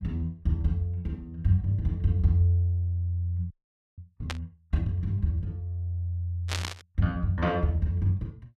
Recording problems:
audio freezing; at 3.5 s
static burst; at 4.5 s and at 6.5 s; peak +1 dB vs average level

